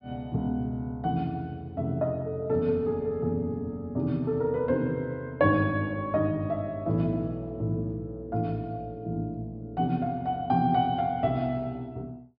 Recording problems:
treble cut off; nothing above 5.5 kHz

